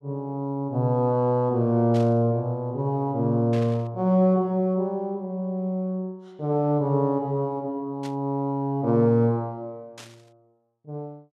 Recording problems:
burst of static; 4 times, first at 2 s; peak -13 dB vs average level

